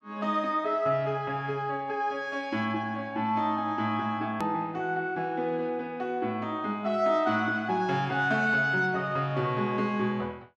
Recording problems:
edit click; at 4.5 s

